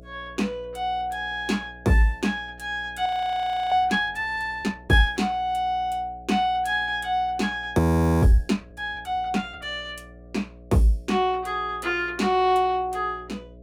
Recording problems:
hum; 60 Hz, harmonics up to 660 Hz, SNR 22 dB
frozen audio; at 3 s for 0.5 s and at 8 s

